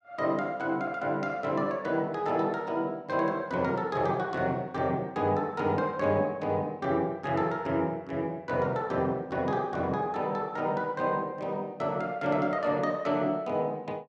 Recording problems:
none

